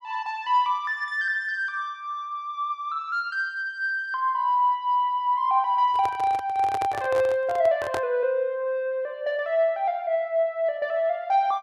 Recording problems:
handling noise; from 6 to 8 s; peak -2 dB vs average level

